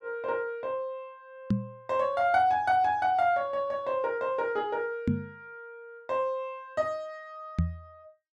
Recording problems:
microphone thump; at 1.5 s, at 5 s and at 7.5 s; peak +6 dB vs average level

